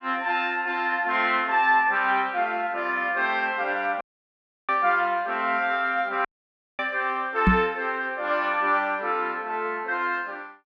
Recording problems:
dropout; at 4 s for 0.5 s and at 6.5 s for 0.5 s
knock on the microphone; at 7.5 s; peak +7 dB vs average level

